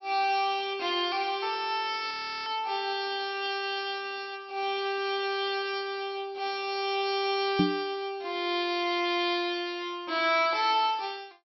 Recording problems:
treble missing; nothing above 5.8 kHz
audio freezing; at 2 s
microphone bump; at 7.5 s; peak +7 dB vs average level

